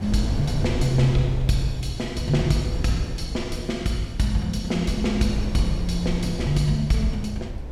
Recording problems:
wind on the microphone; below 120 Hz, SNR 7 dB

